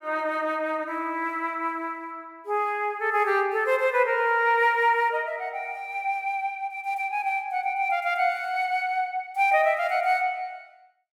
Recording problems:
none

